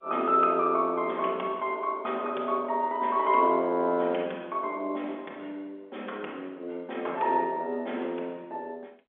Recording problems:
telephone audio; 280 Hz to 3.6 kHz, G.711

